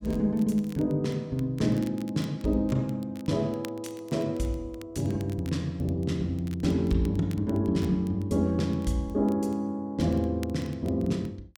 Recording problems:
crackling; vinyl, SNR 25 dB

